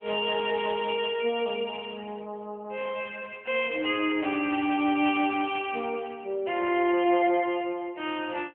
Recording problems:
telephone audio; 260 Hz to 3.2 kHz, AMR-NB

